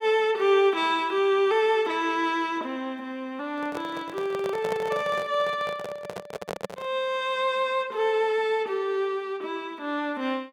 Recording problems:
microphone handling noise; from 3.5 to 7 s; peak -2 dB vs average level

